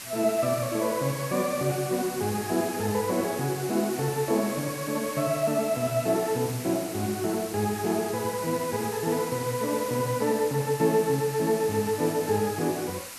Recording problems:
hiss; slope +1 dB per octave, SNR 10 dB

